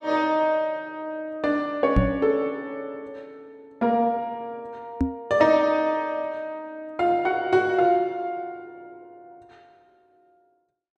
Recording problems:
knock on the microphone; at 2 s and at 5 s; peak +6 dB vs average level

